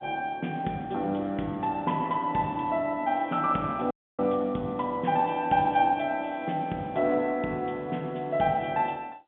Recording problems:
phone line; 150 Hz to 3.6 kHz, G.711
audio cutting out; at 4 s

